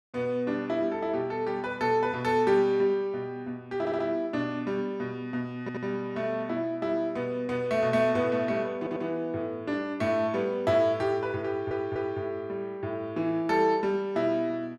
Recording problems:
audio stuttering; 4 times, first at 4 s

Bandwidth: 13 kHz